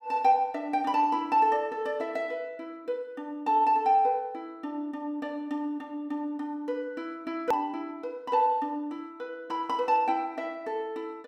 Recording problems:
hard cut with a click; at 7.5 s

